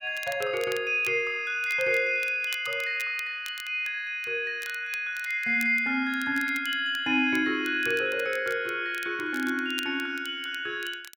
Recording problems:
crackle; vinyl, SNR 19 dB

